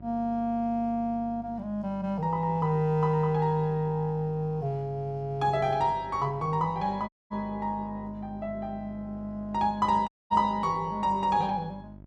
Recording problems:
hum; 50 Hz, harmonics up to 950 Hz, SNR 19 dB
audio cutting out; at 7 s and at 10 s

